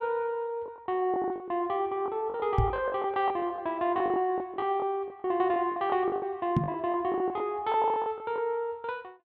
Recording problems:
packet loss; 13% of the sound replaced, filled with the last packet
knock on the microphone; at 2.5 s and at 6.5 s; peak +7 dB vs average level

